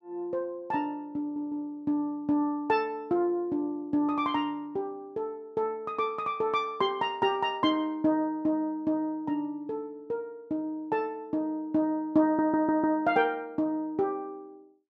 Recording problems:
audio stuttering; at 1 s and at 12 s

